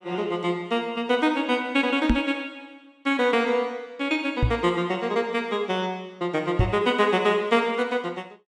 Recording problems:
microphone thump; at 2 s, at 4.5 s and at 6.5 s; peak +7 dB vs average level

